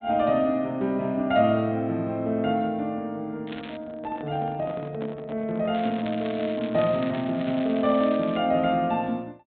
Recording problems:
treble missing; nothing above 4 kHz
handling noise; from 3.5 to 6.5 s; peak -7 dB vs average level
crackling; at 3.5 s and from 5.5 to 8.5 s; loose cable, SNR 17 dB

